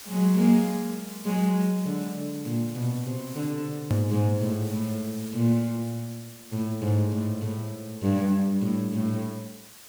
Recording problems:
background hiss; slope 0 dB per octave, SNR 17 dB
edit click; at 4 s

